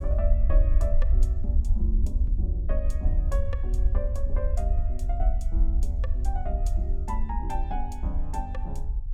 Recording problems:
rumble; below 58 Hz, SNR -9 dB

